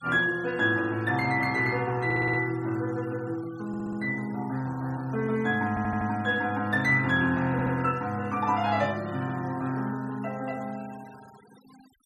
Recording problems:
denoising artefacts; signal-to-artefact ratio 23 dB
stutter; 4 times, first at 2 s

